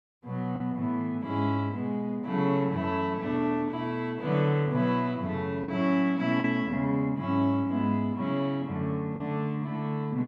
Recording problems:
lost packets; 1.6% of the sound replaced, filled with the last packet

